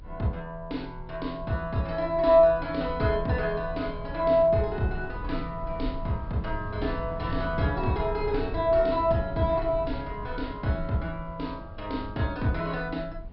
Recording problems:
treble missing; nothing above 5.2 kHz
low-frequency rumble; below 98 Hz, SNR 12 dB

